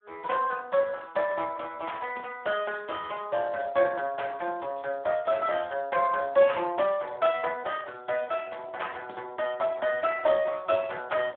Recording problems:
telephone audio; 240 Hz to 3.4 kHz, Speex

